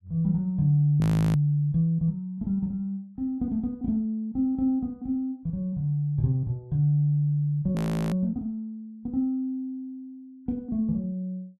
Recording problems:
frozen audio; at 1 s and at 8 s

